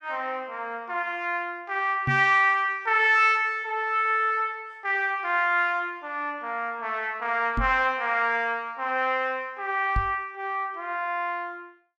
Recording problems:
microphone thump; at 2 s, at 7.5 s and at 10 s; peak 0 dB vs average level

